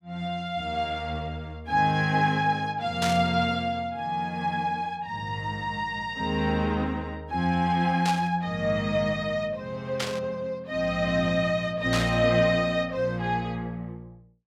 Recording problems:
static burst; 4 times, first at 3 s; peak 0 dB vs average level

